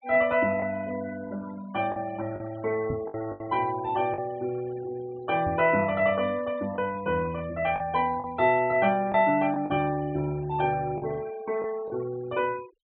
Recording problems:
low-pass filter; nothing above 4 kHz
noise reduction artefacts; signal-to-artefact ratio 19 dB
lost packets; 4% of the sound replaced, filled with the last packet
microphone thump; at 3 s and at 5.5 s; peak -2 dB vs average level

